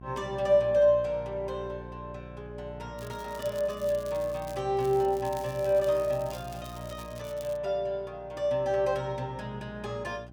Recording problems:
electrical hum; 60 Hz, harmonics up to 780 Hz, SNR 17 dB
crackling; from 3 to 4.5 s and from 5 to 7.5 s; loose cable, SNR 21 dB

